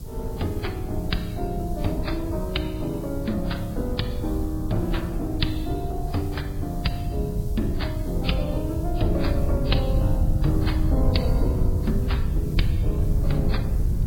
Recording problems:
lossy compression; MP3, then AAC, log-spectral distance 2 dB
background hiss; SNR 20 dB
rumble; below 110 Hz, SNR -1 dB
wind on the microphone; below 140 Hz, SNR 12 dB

